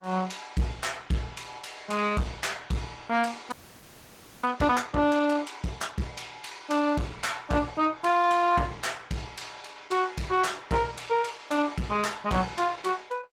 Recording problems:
lossy compression; Opus, log-spectral distance 5 dB, nothing above 17.7 kHz
distorted audio; soft clipping, signal-to-distortion ratio 10 dB
audio freezing; at 3.5 s for 1 s

